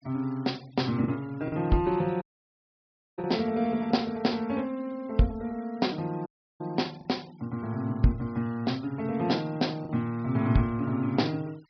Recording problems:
low-pass filter; nothing above 5.5 kHz
noise reduction artefacts; signal-to-artefact ratio 25 dB
lost packets; 1.9% of the sound replaced, filled with the last packet
audio cutting out; at 2 s for 1 s and at 6.5 s

